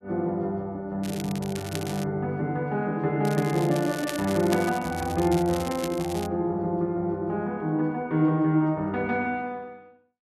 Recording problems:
crackling; from 1 to 2 s and from 3 to 6.5 s; loose cable, SNR 13 dB

